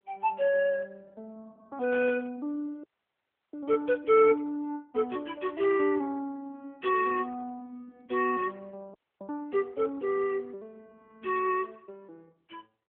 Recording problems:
phone line; 320 Hz to 3.3 kHz, AMR-NB
burst of static; at 2 s; peak -10 dB vs average level
audio freezing; at 3 s for 0.5 s and at 9 s

